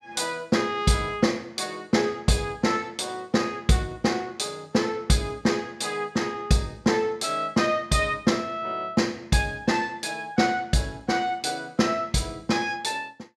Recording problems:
none

